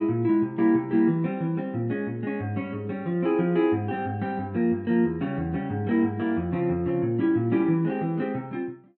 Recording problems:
none

